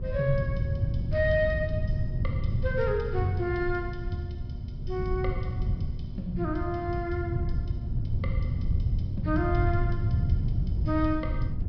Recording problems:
treble missing; nothing above 5.5 kHz
hum; 60 Hz, harmonics up to 960 Hz, SNR 17 dB
rumble; below 110 Hz, SNR 10 dB
wind on the microphone; below 120 Hz, SNR 0 dB

